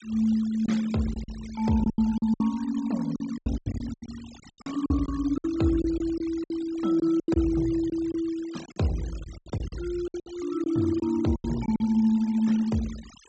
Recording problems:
low-pass filter; nothing above 8 kHz
denoising artefacts; signal-to-artefact ratio 20 dB
lost packets; 13% of the sound replaced, filled with silence

